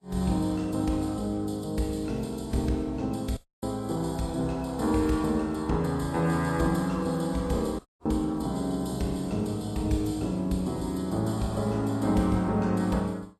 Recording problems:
codec artefacts; Vorbis, log-spectral distance 3 dB, nothing above 13.5 kHz
dropout; at 3.5 s and at 8 s

